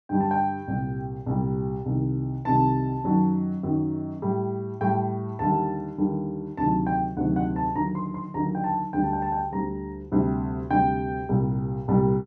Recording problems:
none

